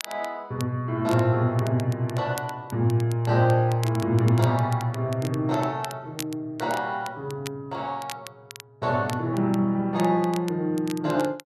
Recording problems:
crackle; vinyl, SNR 18 dB

